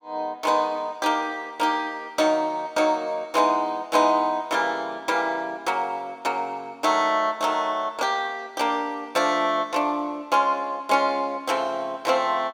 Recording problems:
none

